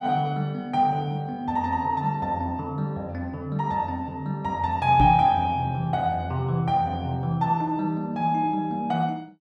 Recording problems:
microphone bump; at 5 s; peak +4 dB vs average level

